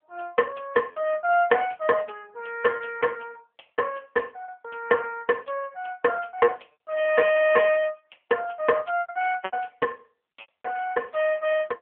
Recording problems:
telephone audio; 260 Hz to 2.7 kHz, AMR-NB
packet loss; 5% of the sound replaced, filled with repeated pitch periods

